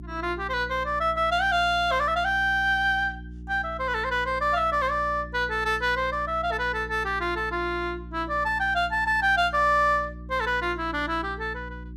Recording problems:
hum; 60 Hz, harmonics up to 360 Hz, SNR 15 dB

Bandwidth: 14.5 kHz